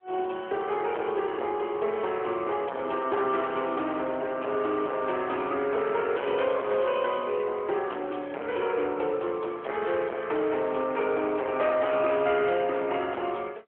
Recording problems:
phone line; 300 Hz to 3.4 kHz, AMR-NB
distortion; hard clipping, signal-to-distortion ratio 11 dB

